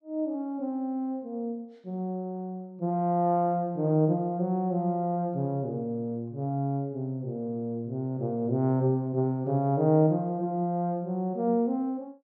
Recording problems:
none

